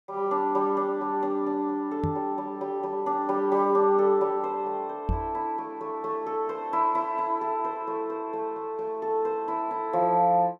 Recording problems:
microphone bump; at 2 s and at 5 s; peak +1 dB vs average level

